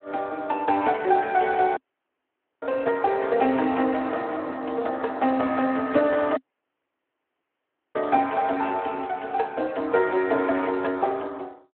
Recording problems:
phone line; 220 Hz to 3.2 kHz, Speex
audio cutting out; at 2 s for 1 s and at 6.5 s for 1.5 s

